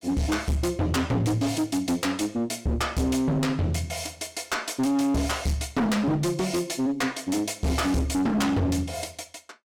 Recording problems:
distorted audio; hard clipping, uneven, signal-to-distortion ratio 7 dB

